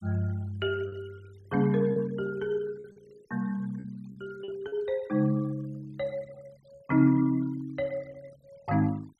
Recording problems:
noise reduction artefacts; signal-to-artefact ratio 27 dB
packet loss; 4% of the sound replaced, filled with repeated pitch periods

